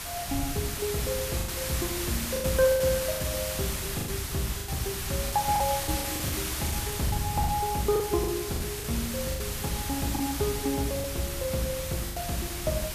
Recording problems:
hiss; slope 0 dB per octave, SNR 2 dB
wind noise; below 130 Hz, SNR 11 dB
packet loss; 9% of the sound replaced, filled with the last packet

